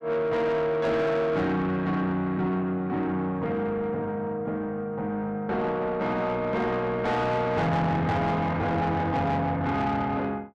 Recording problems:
distorted audio; soft clipping, signal-to-distortion ratio 10 dB

